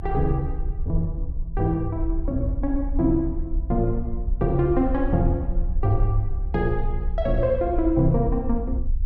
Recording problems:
low-frequency rumble; below 58 Hz, SNR 5 dB

